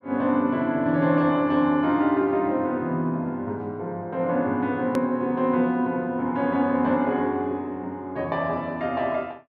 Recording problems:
hard cut with a click; at 5 s

